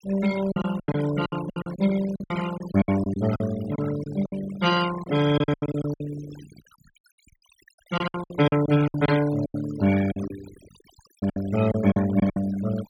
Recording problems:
noise reduction artefacts; signal-to-artefact ratio 13 dB
lost packets; 15% of the sound replaced, filled with silence

